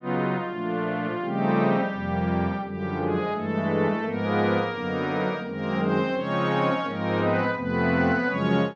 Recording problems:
none

